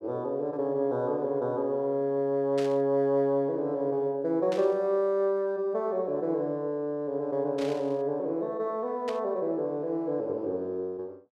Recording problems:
burst of static; 4 times, first at 2.5 s; peak -8 dB vs average level

